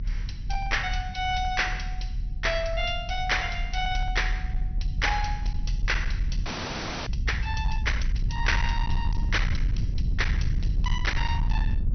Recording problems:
low-pass filter; nothing above 6.1 kHz
distortion; hard clipping, signal-to-distortion ratio 11 dB
low-frequency rumble; below 76 Hz, strongest tone 38 Hz, SNR 1 dB
audio freezing; at 6.5 s for 0.5 s

